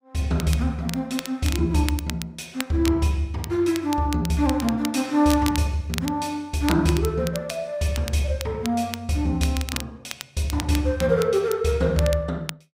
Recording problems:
crackling; vinyl, SNR 12 dB

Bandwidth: 15.5 kHz